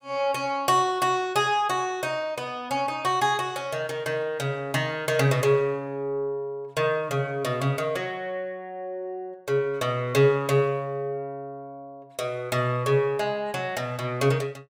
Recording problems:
none

